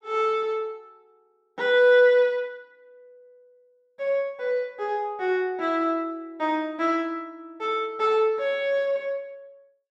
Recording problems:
none

